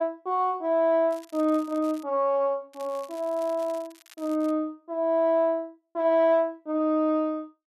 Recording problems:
crackling; at 1 s and from 2.5 to 4.5 s; loose cable, SNR 26 dB

